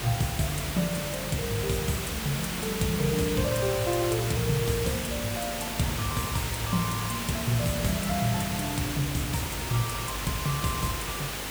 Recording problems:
hum; 50 Hz, harmonics up to 400 Hz, SNR 14 dB
background hiss; slope -2 dB per octave, SNR 3 dB

